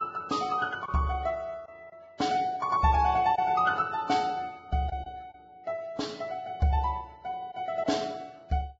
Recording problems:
codec artefacts; Vorbis, log-spectral distance 2 dB, nothing above 7.3 kHz
packet loss; 2% of the sound replaced, filled with silence

